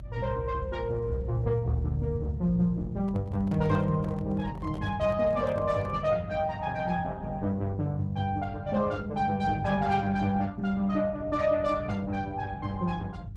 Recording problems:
codec artefacts; Opus, log-spectral distance 2 dB, nothing above 11 kHz
rumble; below 120 Hz, SNR 9 dB
handling noise; from 3 to 6 s; peak -10 dB vs average level

